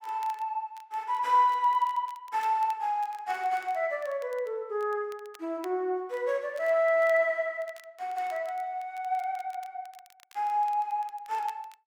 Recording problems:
crackle; vinyl, SNR 27 dB

